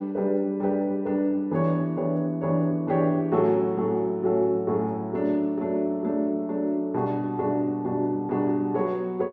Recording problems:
none

